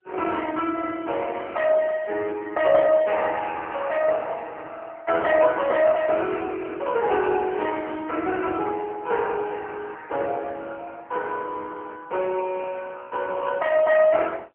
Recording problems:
phone line; 320 Hz to 3.1 kHz, AMR-NB

